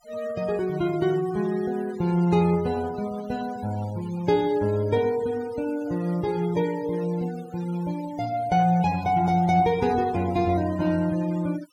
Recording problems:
denoising artefacts; signal-to-artefact ratio 19 dB

